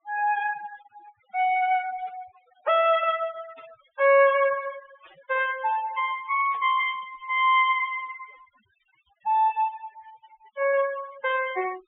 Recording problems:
low-pass filter; nothing above 3.4 kHz
noise reduction artefacts; signal-to-artefact ratio 21 dB
burst of static; 4 times, first at 2 s; peak -19 dB vs average level

